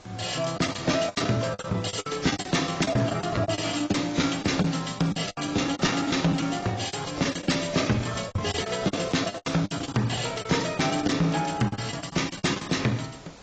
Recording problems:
codec artefacts; AAC, log-spectral distance 8 dB, nothing above 7.6 kHz
distortion; soft clipping, signal-to-distortion ratio 10 dB
background hiss; slope -4 dB per octave, SNR 22 dB
packet loss; 17% of the sound replaced, filled with the last packet
crackle; from 2.5 to 6.5 s and from 8.5 to 10 s; loose cable, SNR 23 dB

